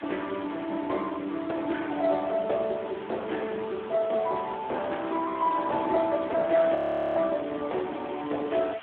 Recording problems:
telephone audio; 240 Hz to 3.5 kHz, Speex
hiss; SNR 18 dB
frozen audio; at 7 s

